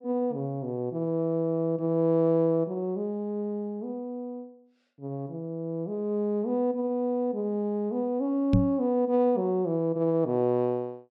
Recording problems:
microphone bump; at 8.5 s; peak +8 dB vs average level

